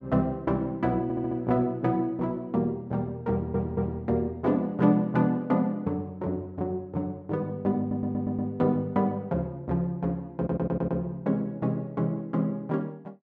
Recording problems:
stutter; 4 times, first at 1 s

